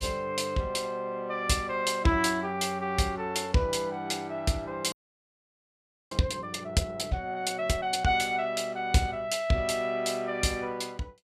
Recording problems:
audio freezing; at 5 s for 1 s

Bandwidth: 14.5 kHz